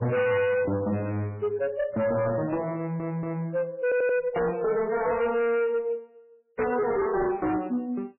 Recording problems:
codec artefacts; MP3, log-spectral distance 2 dB, nothing above 2.6 kHz
distorted audio; hard clipping, uneven, signal-to-distortion ratio 6 dB
stutter; at 3 s and at 4 s

